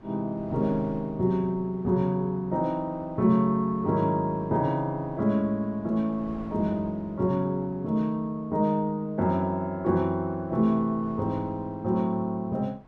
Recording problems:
wind noise; below 600 Hz, SNR 23 dB

